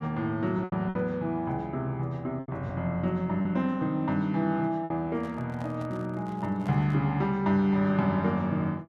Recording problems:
packet loss; 4% of the sound replaced, filled with repeated pitch periods
handling noise; from 5 to 7 s; peak -11 dB vs average level

